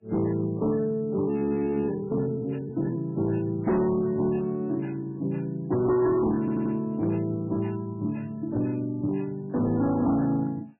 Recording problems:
lossy codec; MP3, log-spectral distance 2 dB, nothing above 2.6 kHz
distortion; hard clipping, signal-to-distortion ratio 12 dB
frozen audio; at 1.5 s for 0.5 s
audio stuttering; at 6.5 s

